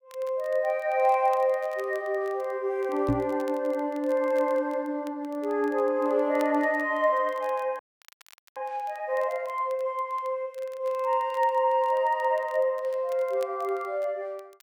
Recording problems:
crackling; vinyl, SNR 28 dB
microphone bump; at 3 s; peak +4 dB vs average level
frozen audio; at 8 s for 1 s

